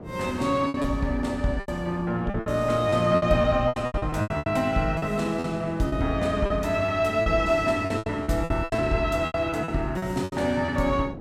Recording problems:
wind noise; below 410 Hz, SNR 16 dB
lost packets; 14% of the sound replaced, filled with repeated pitch periods

